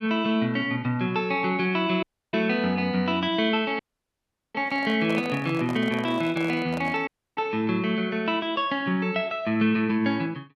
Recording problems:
audio cutting out; at 2 s, at 4 s for 1 s and at 7 s
handling noise; from 4.5 to 7 s; peak -6 dB vs average level

